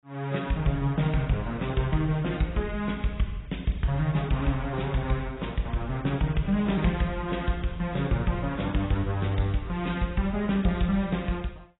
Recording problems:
lossy compression; AAC, log-spectral distance 3 dB, nothing above 3.8 kHz

